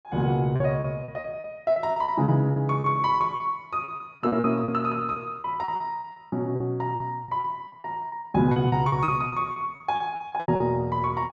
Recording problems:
packet loss; 16% of the sound replaced, filled with repeated pitch periods

